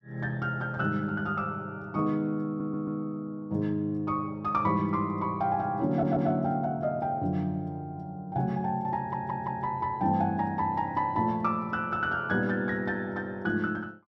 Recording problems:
audio stuttering; at 2.5 s, at 6 s and at 9 s

